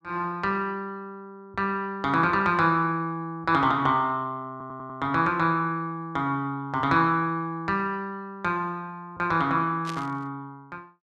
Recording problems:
audio stuttering; at 4.5 s
static burst; at 10 s; peak -7 dB vs average level

